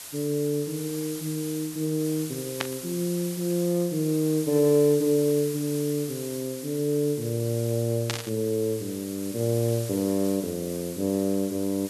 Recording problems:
hiss; slope +1 dB per octave, SNR 11 dB
static burst; at 2.5 s and at 8 s; peak +2 dB vs average level

